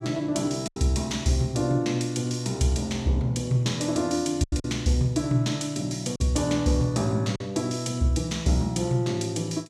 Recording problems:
packet loss; 3% of the sound replaced, filled with silence

